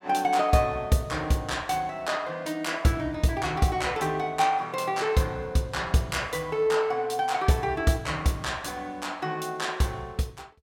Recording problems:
none

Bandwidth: 17 kHz